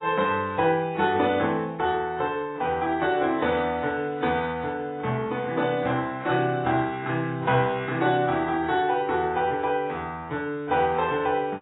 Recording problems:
codec artefacts; AAC, log-spectral distance 2 dB, nothing above 3.2 kHz

